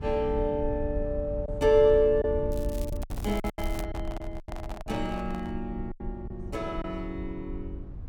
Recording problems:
rumble; below 80 Hz, SNR 9 dB
packet loss; 7% of the sound replaced, filled with silence
crackling; from 2.5 to 4 s; loose cable, SNR 19 dB
handling noise; from 3 to 5.5 s; peak -9 dB vs average level

